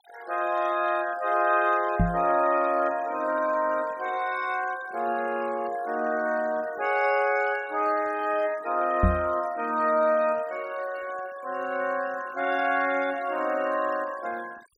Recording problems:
denoising artefacts; signal-to-artefact ratio 20 dB
microphone thump; at 2 s and at 9 s; peak +6 dB vs average level

